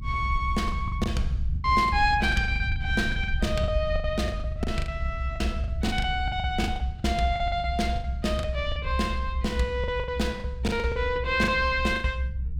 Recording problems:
low-frequency rumble; below 74 Hz, SNR 4 dB
lost packets; 15% of the sound replaced, filled with the last packet

